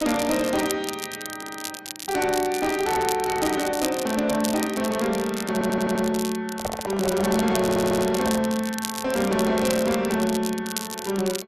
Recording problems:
distortion; soft clipping, signal-to-distortion ratio 11 dB
crackle; vinyl, SNR 9 dB
audio stuttering; at 1.5 s, at 5.5 s and at 7.5 s
handling noise; from 6.5 to 8.5 s; peak 0 dB vs average level

